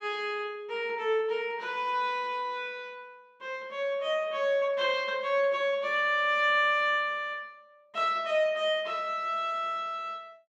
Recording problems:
none

